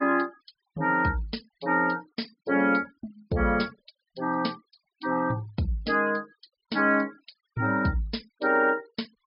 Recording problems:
low-pass filter; nothing above 5.5 kHz
denoising artefacts; signal-to-artefact ratio 26 dB

